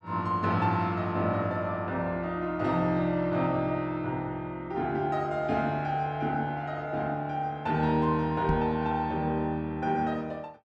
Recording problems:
knock on the microphone; at 8.5 s; peak +3 dB vs average level

